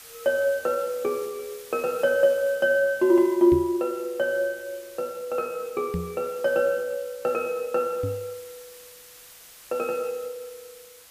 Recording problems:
hiss; slope +1 dB per octave, SNR 20 dB
microphone thump; at 3.5 s, at 6 s and at 8 s; peak -1 dB vs average level

